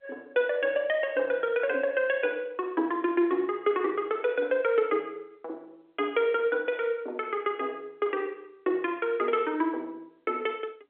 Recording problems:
phone line; 240 Hz to 3.5 kHz, G.711

